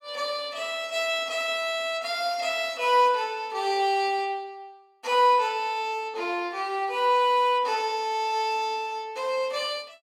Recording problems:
none

